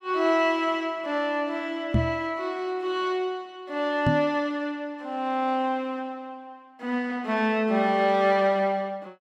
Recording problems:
microphone thump; at 2 s and at 4 s; peak +6 dB vs average level

